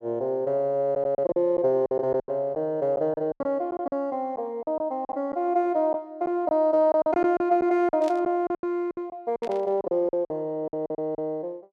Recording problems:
lost packets; 12% of the sound replaced, filled with silence
static burst; at 8 s and at 9.5 s; peak -12 dB vs average level

